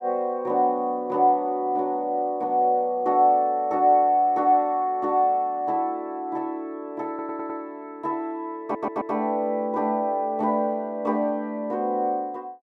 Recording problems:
stutter; at 7 s and at 8.5 s

